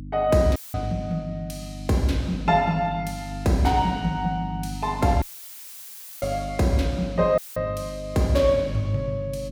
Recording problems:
electrical hum; 50 Hz, harmonics up to 300 Hz, SNR 11 dB
dropout; at 0.5 s, at 5 s for 1 s and at 7.5 s; filled with static

